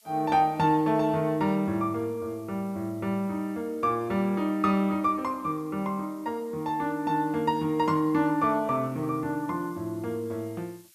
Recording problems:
hiss; slope +5 dB per octave, SNR 28 dB

